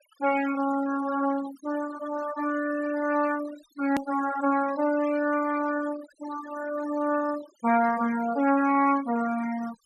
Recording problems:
denoising artefacts; signal-to-artefact ratio 16 dB
hard cut with a click; at 4 s

